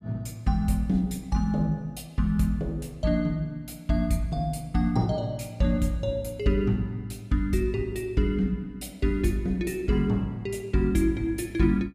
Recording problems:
none

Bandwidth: 15.5 kHz